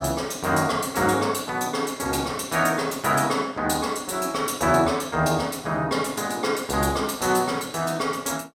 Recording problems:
none

